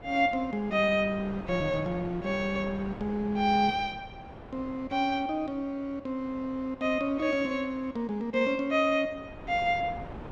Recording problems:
wind noise; below 720 Hz, SNR 16 dB

